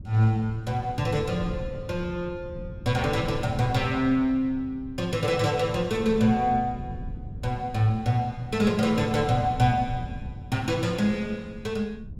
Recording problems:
wind noise; below 150 Hz, SNR 13 dB

